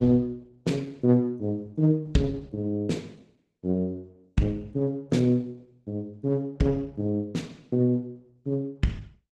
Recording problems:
lossy compression; Opus, log-spectral distance 2 dB, nothing above 12 kHz

